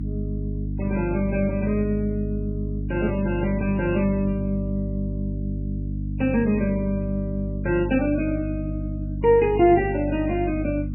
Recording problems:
codec artefacts; MP3, log-spectral distance 2 dB, nothing above 2.7 kHz
electrical hum; 50 Hz, harmonics up to 300 Hz, SNR 5 dB

